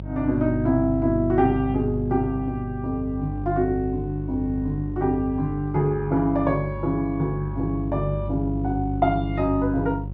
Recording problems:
hum; 50 Hz, harmonics up to 550 Hz, SNR 7 dB

